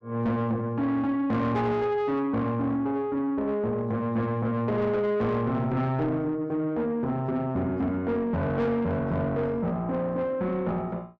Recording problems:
distorted audio; soft clipping, signal-to-distortion ratio 11 dB

